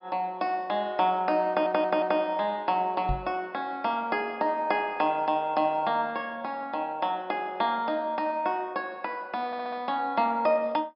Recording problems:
low-pass filter; nothing above 5.5 kHz
stutter; at 1.5 s and at 9.5 s
microphone thump; at 3 s; peak 0 dB vs average level

